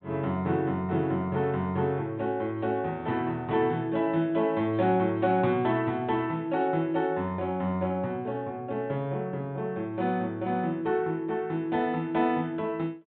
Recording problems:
treble missing; nothing above 4 kHz

